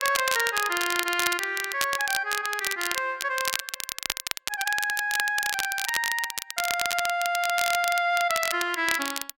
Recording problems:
crackling; vinyl, SNR 4 dB

